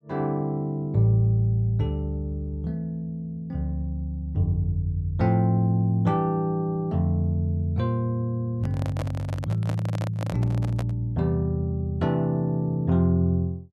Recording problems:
microphone handling noise; from 8.5 to 11 s; peak -5 dB vs average level

